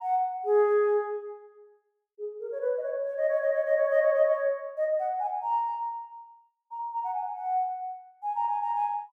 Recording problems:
none

